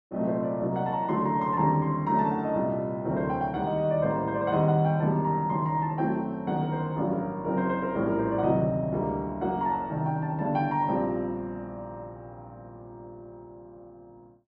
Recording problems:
none

